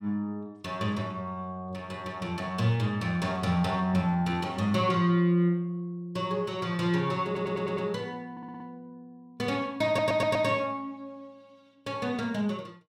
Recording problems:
audio stuttering; at 7.5 s, at 8.5 s and at 10 s

